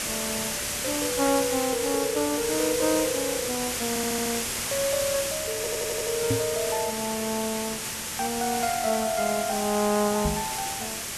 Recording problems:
hum; 60 Hz, harmonics up to 2.2 kHz, SNR 26 dB
background hiss; slope 0 dB per octave, SNR 1 dB
stutter; at 4 s and at 5.5 s
knock on the microphone; at 6.5 s and at 10 s; peak +4 dB vs average level

